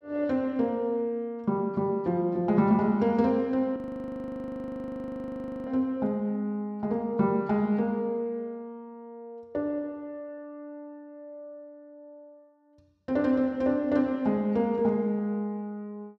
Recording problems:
frozen audio; at 4 s for 2 s

